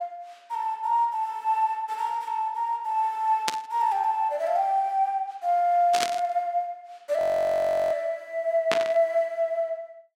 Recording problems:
burst of static; at 3.5 s, at 6 s and at 8.5 s; peak +3 dB vs average level
audio freezing; at 7 s for 0.5 s

